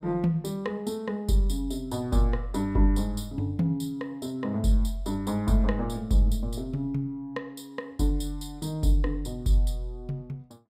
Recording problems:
none

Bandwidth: 15.5 kHz